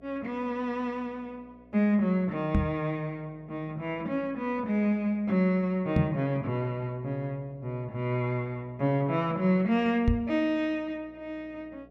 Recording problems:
hum; 60 Hz, harmonics up to 720 Hz, SNR 28 dB
knock on the microphone; at 2.5 s, at 6 s and at 10 s; peak +8 dB vs average level

